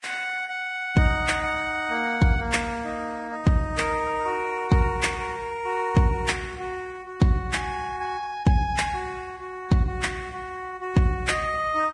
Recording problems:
codec artefacts; Vorbis, log-spectral distance 3 dB, nothing above 10.1 kHz

